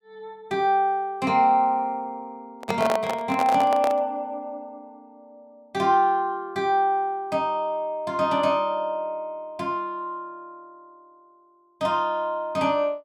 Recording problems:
handling noise; from 2.5 to 4 s; peak +2 dB vs average level

